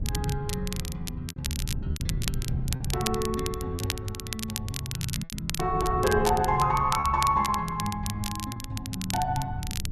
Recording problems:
wind on the microphone; below 140 Hz, SNR 7 dB
crackle; vinyl, SNR 7 dB
packet loss; 6% of the sound replaced, filled with repeated pitch periods

